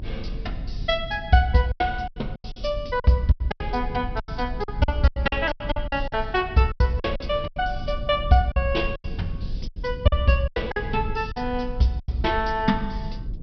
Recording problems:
treble missing; nothing above 5.5 kHz
rumble; below 74 Hz, SNR 10 dB
lost packets; 12% of the sound replaced, filled with silence

